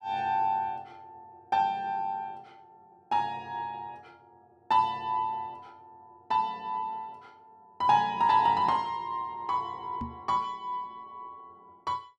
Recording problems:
microphone thump; at 10 s; peak -4 dB vs average level

